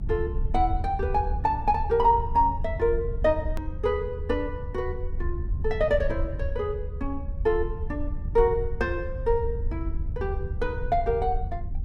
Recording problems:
low-frequency rumble; below 76 Hz, SNR 6 dB
click at an edit; at 3.5 s

